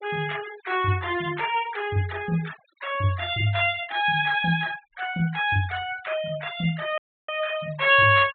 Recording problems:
treble cut off; nothing above 4 kHz
denoising artefacts; signal-to-artefact ratio 18 dB
dropout; at 7 s

